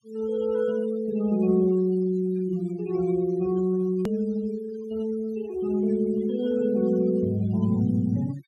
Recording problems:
noise reduction artefacts; signal-to-artefact ratio 23 dB
click at an edit; at 4 s

